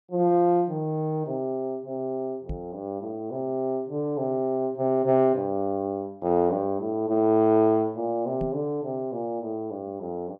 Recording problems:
microphone bump; at 2.5 s and at 8.5 s; peak -3 dB vs average level

